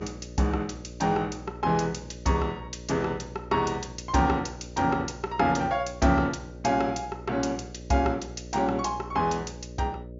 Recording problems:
treble cut off; nothing above 7.3 kHz
hum; 60 Hz, harmonics up to 600 Hz, SNR 15 dB

